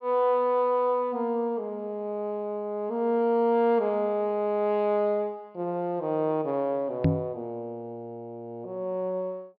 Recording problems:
treble cut off; nothing above 5.5 kHz
microphone bump; at 7 s; peak +7 dB vs average level

